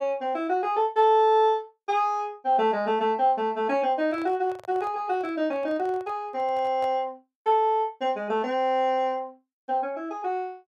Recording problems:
handling noise; from 4 to 7 s; peak -11 dB vs average level

